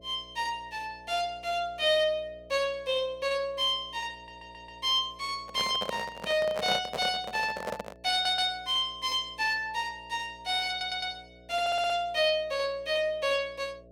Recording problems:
electrical hum; 60 Hz, harmonics up to 660 Hz, SNR 25 dB
audio stuttering; 4 times, first at 4 s
microphone handling noise; from 5.5 to 8 s; peak 0 dB vs average level

